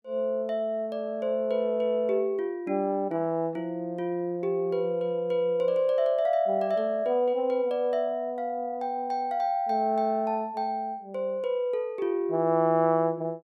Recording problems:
none

